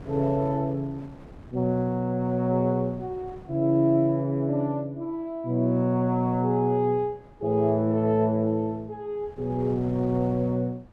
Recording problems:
wind noise; below 430 Hz, SNR 22 dB

